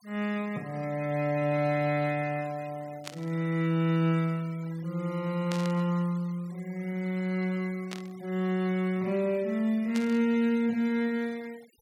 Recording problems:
noise reduction artefacts; signal-to-artefact ratio 24 dB
static burst; 4 times, first at 3 s; peak -5 dB vs average level

